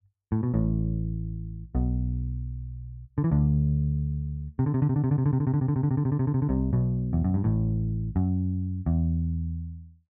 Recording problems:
none

